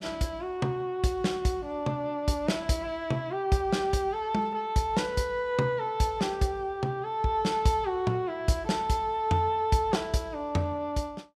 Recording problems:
none

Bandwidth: 15 kHz